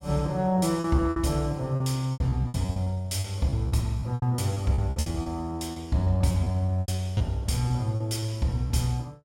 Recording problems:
packet loss; 15% of the sound replaced, filled with repeated pitch periods

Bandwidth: 16.5 kHz